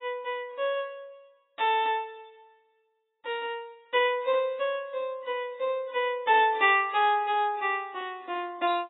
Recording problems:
lossy compression; AAC, log-spectral distance 2 dB, nothing above 3.4 kHz

